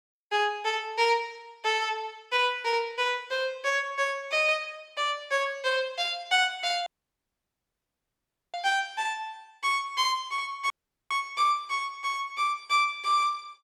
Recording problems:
dropout; at 7 s for 1.5 s and at 11 s

